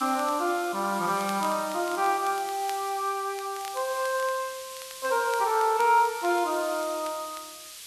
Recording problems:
background hiss; SNR 13 dB
crackle; vinyl, SNR 21 dB

